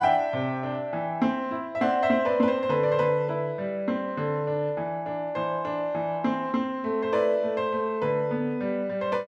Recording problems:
none

